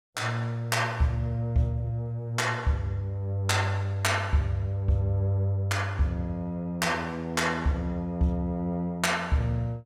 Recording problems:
none

